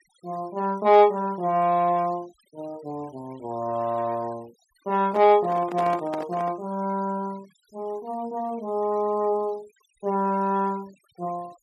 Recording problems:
noise reduction artefacts; signal-to-artefact ratio 27 dB
handling noise; from 5 to 6.5 s; peak -6 dB vs average level

